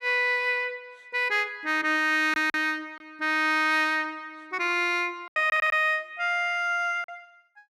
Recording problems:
packet loss; 3% of the sound replaced, filled with silence
audio stuttering; at 5.5 s

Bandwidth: 14.5 kHz